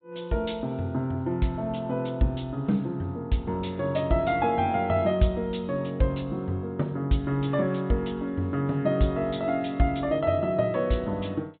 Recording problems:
low-pass filter; nothing above 4 kHz

